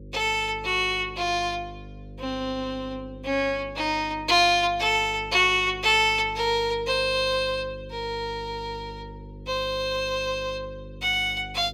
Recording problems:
electrical hum; 50 Hz, harmonics up to 550 Hz, SNR 18 dB

